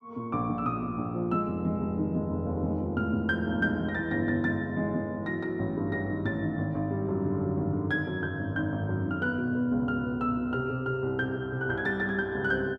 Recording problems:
none

